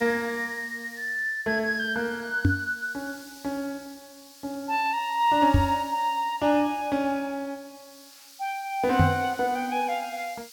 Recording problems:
background hiss; SNR 20 dB
microphone thump; at 2.5 s, at 5.5 s and at 9 s; peak +8 dB vs average level

